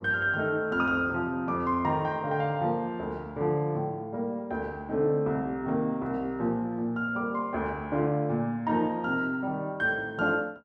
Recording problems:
none

